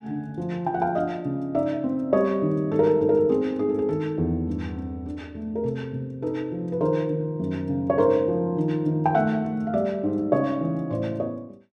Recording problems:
none

